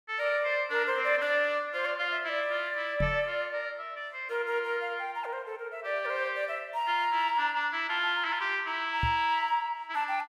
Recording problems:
microphone bump; at 3 s and at 9 s; peak +1 dB vs average level

